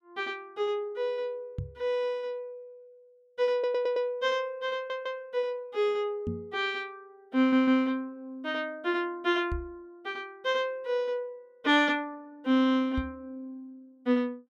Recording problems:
microphone bump; 4 times, first at 1.5 s; peak -1 dB vs average level
stutter; at 3.5 s, at 5 s and at 7.5 s

